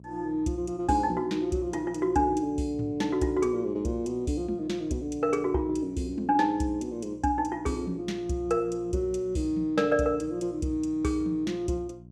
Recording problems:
hum; 60 Hz, harmonics up to 420 Hz, SNR 21 dB

